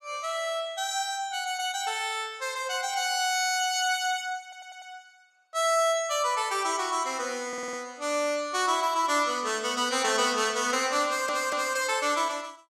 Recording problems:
stutter; at 4.5 s, at 7.5 s and at 11 s

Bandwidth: 14.5 kHz